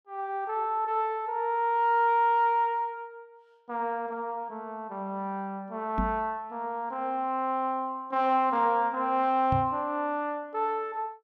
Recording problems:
microphone bump; at 6 s and at 9.5 s; peak +1 dB vs average level

